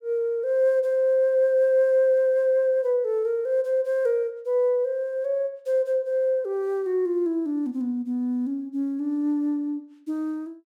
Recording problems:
none

